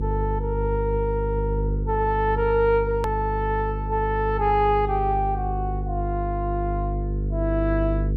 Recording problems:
mains hum; 50 Hz, harmonics up to 500 Hz, SNR 3 dB
hard cut with a click; at 3 s

